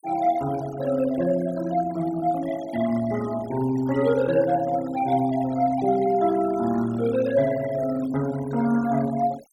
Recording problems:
noise reduction artefacts; signal-to-artefact ratio 17 dB

